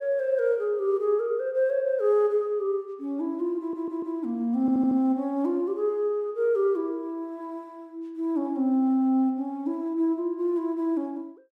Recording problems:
audio stuttering; at 3.5 s and at 4.5 s

